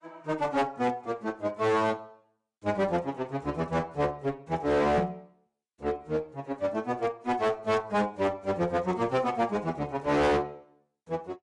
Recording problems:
codec artefacts; AAC, log-spectral distance 2 dB, nothing above 10.4 kHz
distortion; hard clipping, signal-to-distortion ratio 8 dB
microphone bump; at 5 s; peak +3 dB vs average level

